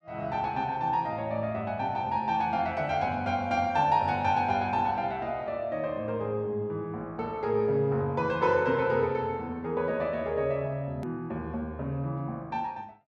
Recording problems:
click at an edit; at 11 s

